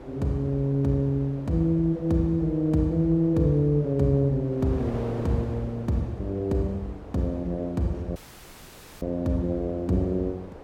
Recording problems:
wind on the microphone; below 690 Hz, SNR 16 dB
audio cutting out; at 8 s for 1 s

